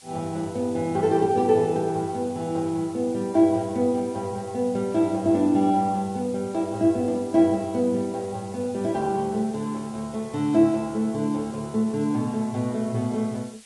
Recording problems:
lossy codec; Vorbis, log-spectral distance 5 dB
background hiss; slope +2 dB per octave, SNR 23 dB

